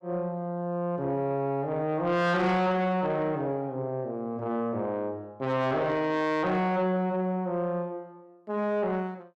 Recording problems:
distortion; soft clipping, signal-to-distortion ratio 10 dB

